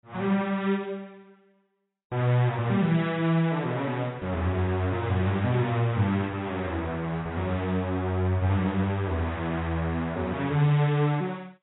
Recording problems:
lossy codec; AAC, log-spectral distance 2 dB, nothing above 3.8 kHz

